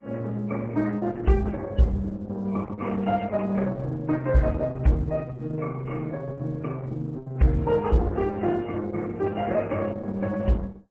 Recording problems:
lossy compression; MP3, then Opus, log-spectral distance 3 dB, nothing above 7.6 kHz

